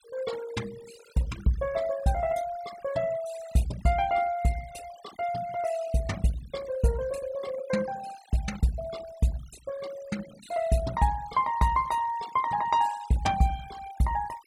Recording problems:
noise reduction artefacts; signal-to-artefact ratio 18 dB

